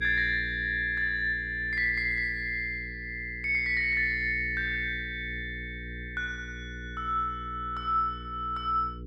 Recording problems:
hum; 60 Hz, harmonics up to 480 Hz, SNR 14 dB

